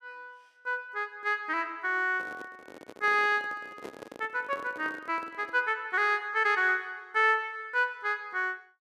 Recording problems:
handling noise; from 2 to 5.5 s; peak -8 dB vs average level

